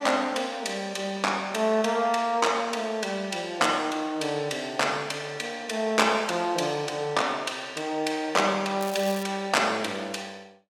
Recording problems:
crackling; at 9 s; loose cable, SNR 15 dB

